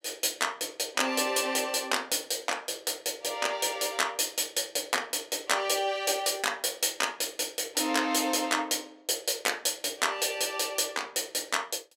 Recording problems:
none

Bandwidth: 16 kHz